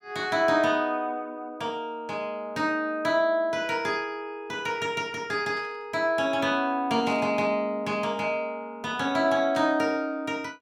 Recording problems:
static burst; 4 times, first at 2.5 s; peak -16 dB vs average level

